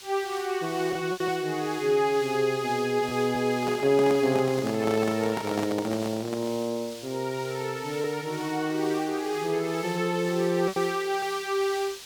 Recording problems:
hiss; slope +2 dB per octave, SNR 15 dB
lost packets; 2% of the sound replaced, filled with repeated pitch periods
handling noise; from 3.5 to 6.5 s; peak -2 dB vs average level

